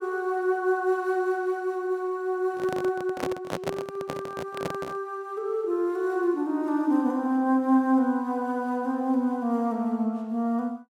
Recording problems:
microphone handling noise; from 2.5 to 5 s; peak 0 dB vs average level

